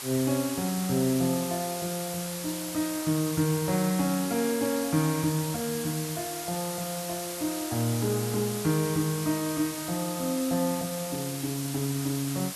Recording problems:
background hiss; slope +1 dB per octave, SNR 6 dB

